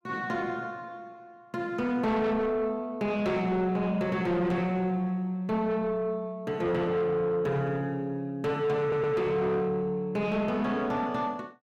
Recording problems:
distorted audio; soft clipping, signal-to-distortion ratio 10 dB
audio stuttering; at 9 s

